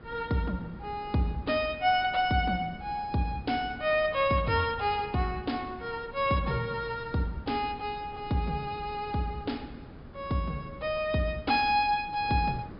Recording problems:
treble missing; nothing above 5.2 kHz
wind noise; below 370 Hz, SNR 18 dB

